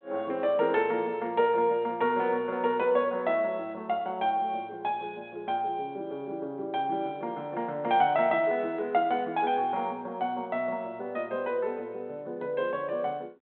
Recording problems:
telephone audio; 280 Hz to 3.5 kHz, G.726

